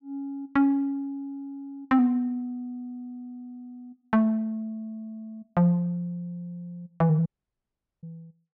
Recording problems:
audio cutting out; at 7.5 s for 1 s

